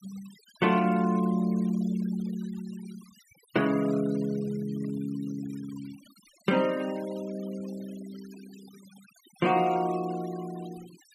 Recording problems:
denoising artefacts; signal-to-artefact ratio 21 dB

